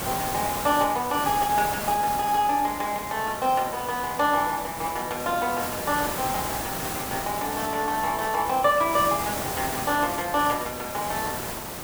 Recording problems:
background hiss; slope -4 dB per octave, SNR 6 dB

